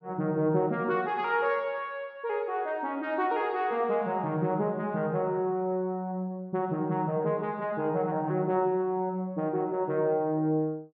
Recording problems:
none

